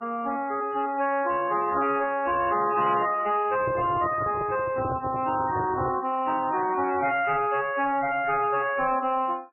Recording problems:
lossy compression; MP3, log-spectral distance 3 dB, nothing above 2.9 kHz
distortion; soft clipping, signal-to-distortion ratio 11 dB
microphone handling noise; from 3.5 to 6 s; peak -1 dB vs average level

